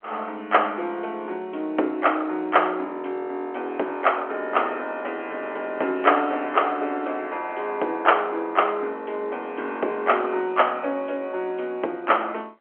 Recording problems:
telephone audio; 260 Hz to 3.3 kHz, G.711

